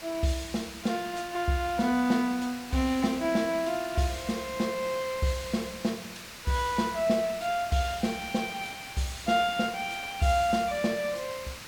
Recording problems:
hiss; slope 0 dB per octave, SNR 12 dB

